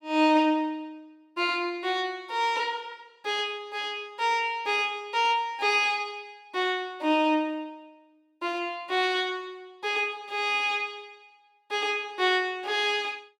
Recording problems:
none

